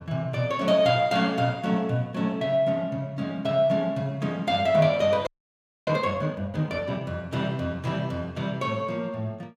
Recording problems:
frozen audio; at 5.5 s for 0.5 s

